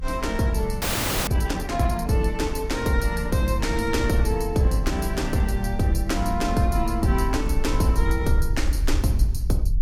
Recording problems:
lossy compression; Vorbis, log-spectral distance 2 dB, nothing above 16.5 kHz
rumble; below 66 Hz, SNR 6 dB
audio freezing; at 1 s

